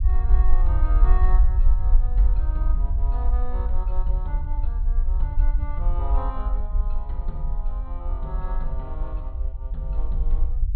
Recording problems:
low-pass filter; nothing above 4.3 kHz
low-frequency rumble; below 50 Hz, SNR -13 dB

